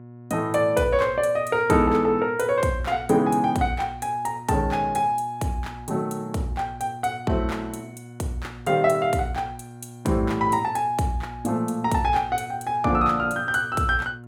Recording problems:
hum; 60 Hz, harmonics up to 1.1 kHz, SNR 18 dB

